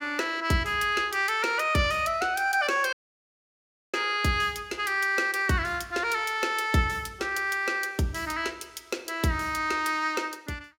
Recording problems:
dropout; at 3 s for 1 s

